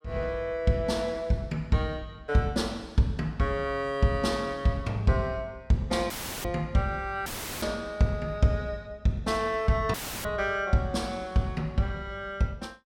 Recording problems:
dropout; at 6 s, at 7.5 s and at 10 s; filled with static

